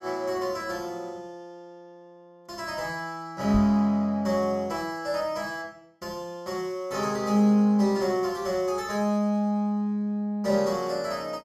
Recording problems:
microphone bump; at 3.5 s; peak -1 dB vs average level

